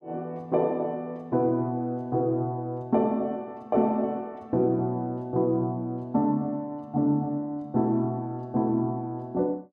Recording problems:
none

